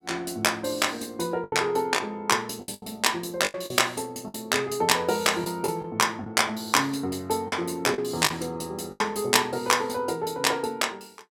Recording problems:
lost packets; 6% of the sound replaced, filled with the last packet

